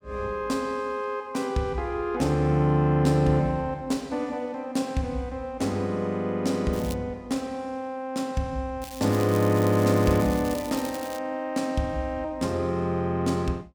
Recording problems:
crackling; at 6.5 s and from 9 to 11 s; loose cable, SNR 15 dB

